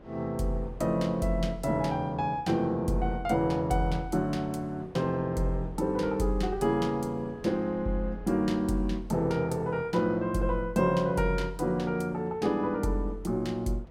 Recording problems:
wind on the microphone; below 570 Hz, SNR 22 dB

